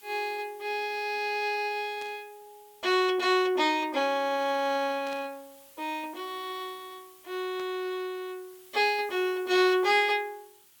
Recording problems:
hiss; slope +1 dB per octave, SNR 25 dB
burst of static; at 2 s, at 5 s and at 7.5 s; peak -14 dB vs average level

